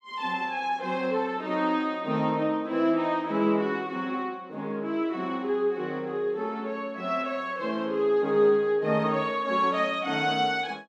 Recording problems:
none

